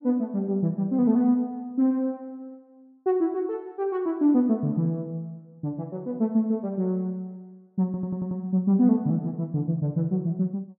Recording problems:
stutter; at 8 s

